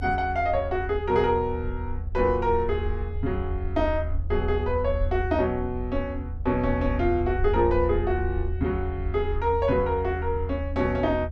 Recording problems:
low-frequency rumble; below 80 Hz, SNR 5 dB

